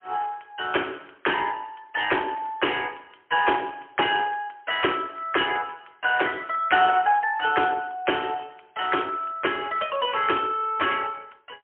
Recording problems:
phone line; 300 Hz to 3.3 kHz, AMR-NB, then MP3

